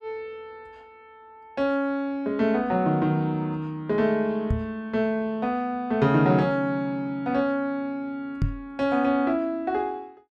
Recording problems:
knock on the microphone; at 4.5 s and at 8.5 s; peak +4 dB vs average level

